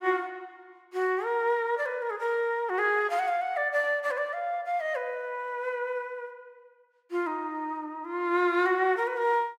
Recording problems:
none

